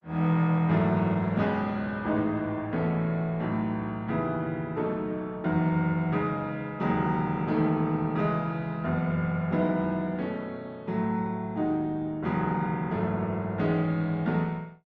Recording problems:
lossy codec; Opus, log-spectral distance 2 dB

